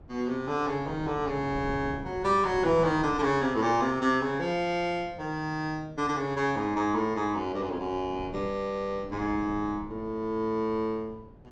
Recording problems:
wind on the microphone; below 330 Hz, SNR 17 dB

